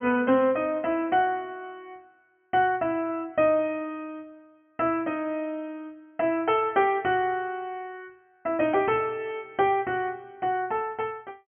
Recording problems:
treble cut off; nothing above 3.2 kHz

